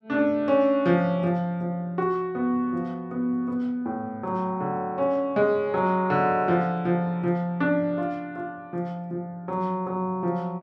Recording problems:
none

